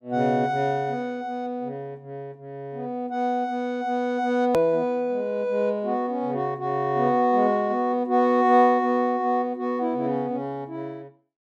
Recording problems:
click at an edit; at 4.5 s

